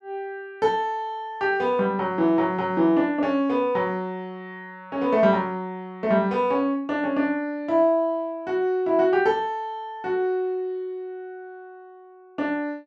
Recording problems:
none

